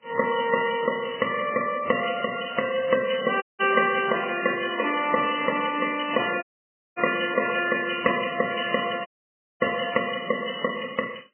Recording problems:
codec artefacts; MP3, then AAC, log-spectral distance 12 dB, nothing above 2.4 kHz
dropout; at 3.5 s, at 6.5 s for 0.5 s and at 9 s for 0.5 s

